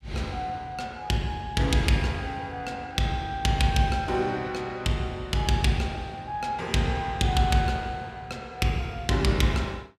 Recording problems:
none

